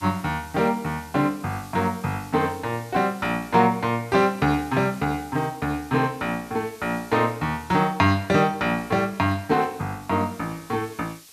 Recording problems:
background hiss; SNR 23 dB

